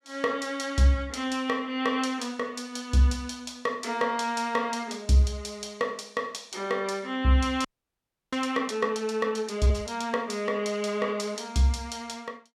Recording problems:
audio freezing; at 7.5 s for 0.5 s

